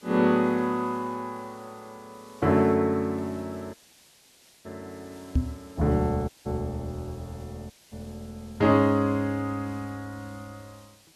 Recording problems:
hiss; SNR 28 dB
dropout; at 4 s for 1 s, at 6.5 s and at 7.5 s
microphone thump; at 5.5 s; peak +6 dB vs average level

